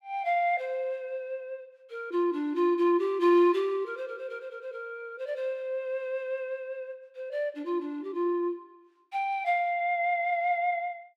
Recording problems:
none

